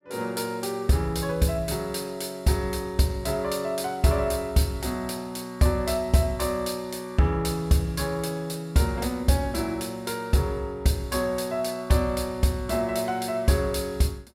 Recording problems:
none

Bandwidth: 16 kHz